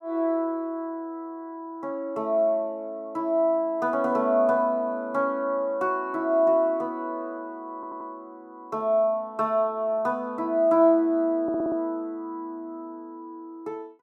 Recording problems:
audio stuttering; at 8 s and at 11 s

